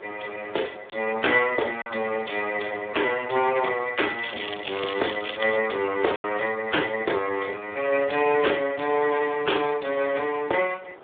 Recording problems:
phone line; 300 Hz to 3.5 kHz, Speex
wind noise; below 1 kHz, SNR 23 dB
lost packets; 1.3% of the sound replaced, filled with silence
crackle; from 4 to 5.5 s; loose cable, SNR 8 dB

